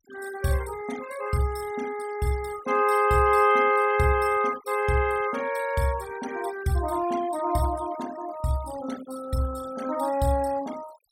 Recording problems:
noise reduction artefacts; signal-to-artefact ratio 18 dB

